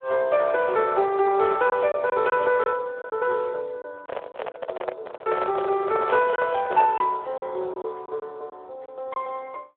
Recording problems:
telephone audio; 320 Hz to 3 kHz, Speex
packet loss; 5% of the sound replaced, filled with silence
handling noise; from 4 to 7 s; peak -1 dB vs average level

